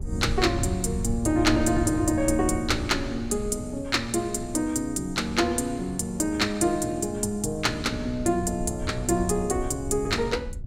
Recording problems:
rumble; below 100 Hz, SNR 10 dB

